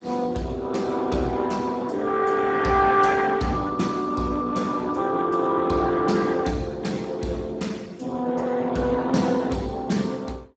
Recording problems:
lossy codec; Speex, log-spectral distance 4 dB, nothing above 7.6 kHz

